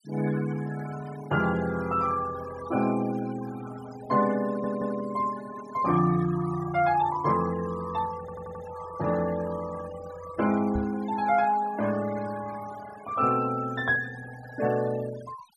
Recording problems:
denoising artefacts; signal-to-artefact ratio 15 dB
audio stuttering; at 4.5 s and at 8 s
microphone thump; at 11 s; peak -2 dB vs average level

